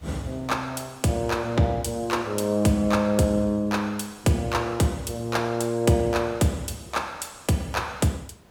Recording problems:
hiss; slope -6 dB per octave, SNR 29 dB

